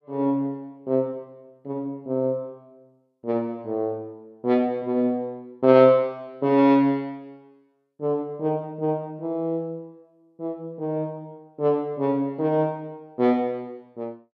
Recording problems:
none

